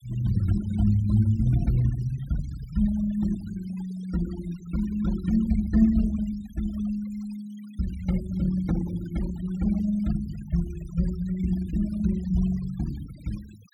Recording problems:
denoising artefacts; signal-to-artefact ratio 22 dB

